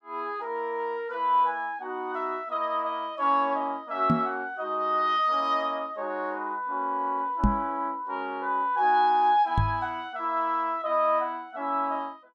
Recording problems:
knock on the microphone; at 4 s, at 7.5 s and at 9.5 s; peak +7 dB vs average level

